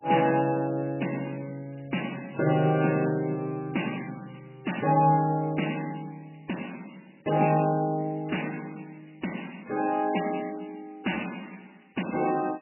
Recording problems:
lossy codec; MP3, log-spectral distance 12 dB, nothing above 2.9 kHz

